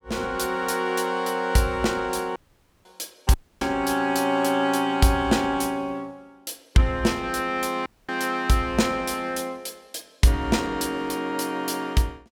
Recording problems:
audio cutting out; at 2.5 s, at 3.5 s and at 8 s

